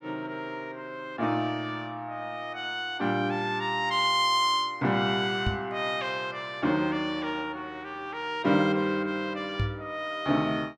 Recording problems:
microphone thump; at 5.5 s and at 9.5 s; peak +2 dB vs average level

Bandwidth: 15 kHz